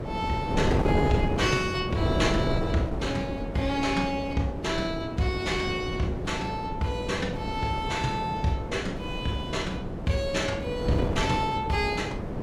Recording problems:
wind noise; below 460 Hz, SNR 2 dB

